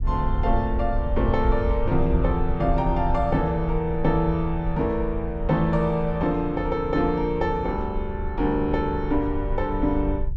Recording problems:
low-frequency rumble; below 64 Hz, SNR 6 dB

